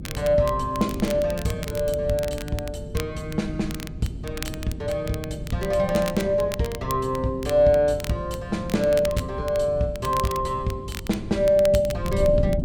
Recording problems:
hum; 50 Hz, harmonics up to 400 Hz, SNR 19 dB
wind noise; below 170 Hz, SNR 12 dB
crackle; vinyl, SNR 16 dB

